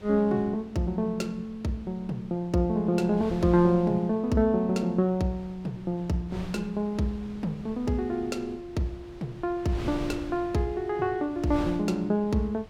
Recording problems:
wind on the microphone; below 480 Hz, SNR 16 dB

